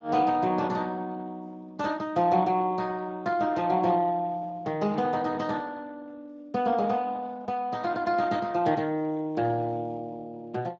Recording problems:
codec artefacts; Speex, log-spectral distance 3 dB

